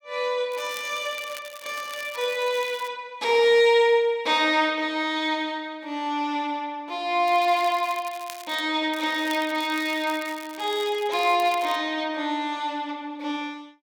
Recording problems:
crackling; from 0.5 to 3 s, from 7.5 to 8.5 s and from 9 to 12 s; loose cable, SNR 18 dB

